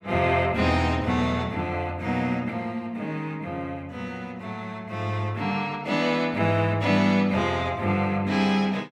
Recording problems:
none

